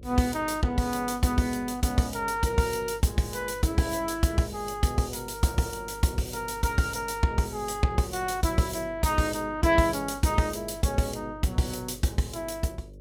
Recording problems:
hum; 50 Hz, harmonics up to 600 Hz, SNR 19 dB

